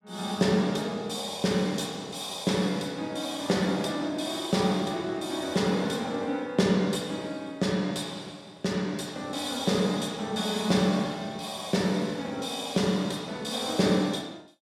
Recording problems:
none

